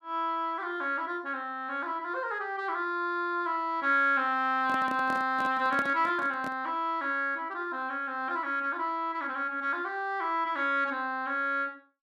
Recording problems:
handling noise; from 4.5 to 6.5 s; peak -2 dB vs average level

